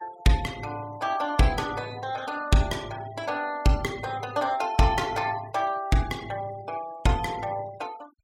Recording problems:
denoising artefacts; signal-to-artefact ratio 21 dB

